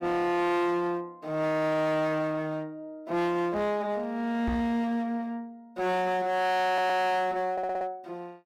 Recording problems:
distortion; hard clipping, uneven, signal-to-distortion ratio 7 dB
microphone bump; at 4.5 s; peak -1 dB vs average level
stutter; at 6.5 s and at 7.5 s

